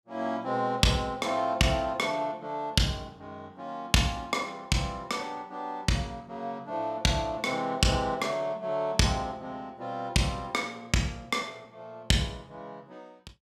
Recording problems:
none

